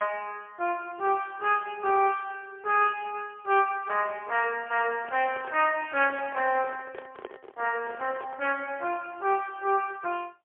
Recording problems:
telephone audio; 300 Hz to 3.3 kHz, AMR-NB, then MP3
microphone handling noise; from 5 to 8.5 s; peak -8 dB vs average level

